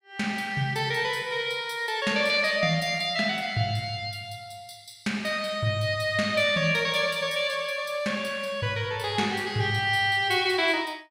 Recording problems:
none

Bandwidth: 16 kHz